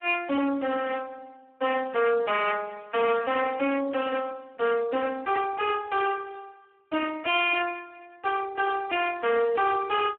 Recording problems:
phone line; 240 Hz to 2.6 kHz, Speex
distorted audio; hard clipping, uneven, signal-to-distortion ratio 7 dB

